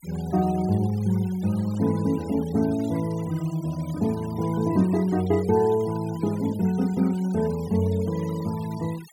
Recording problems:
denoising artefacts; signal-to-artefact ratio 21 dB

